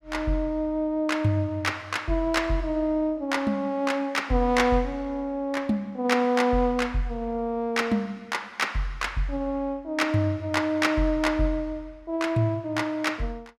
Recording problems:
none

